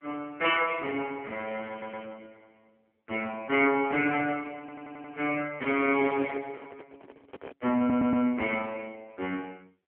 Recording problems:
telephone audio; 220 Hz to 3.3 kHz, AMR-NB
stutter; at 1.5 s, at 4.5 s and at 8 s
microphone handling noise; from 5.5 to 8 s; peak -9 dB vs average level

